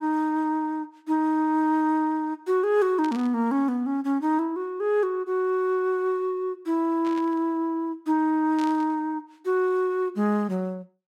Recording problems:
static burst; at 3 s, at 7 s and at 8.5 s; peak -12 dB vs average level

